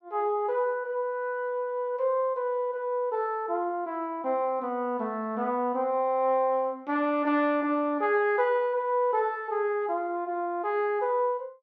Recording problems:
none

